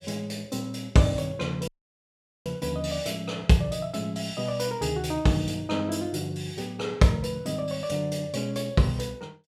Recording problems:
dropout; at 1.5 s for 1 s

